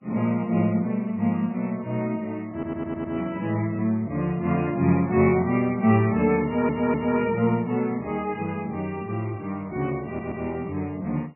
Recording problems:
lossy codec; MP3, log-spectral distance 2 dB, nothing above 2.5 kHz
stutter; at 2.5 s, at 6.5 s and at 10 s

